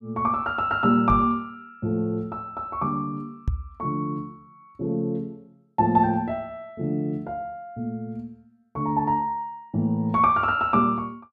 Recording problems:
microphone thump; at 1 s and at 3.5 s; peak +3 dB vs average level

